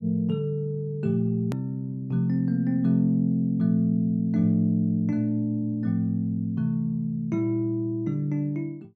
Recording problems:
hard cut with a click; at 1.5 s

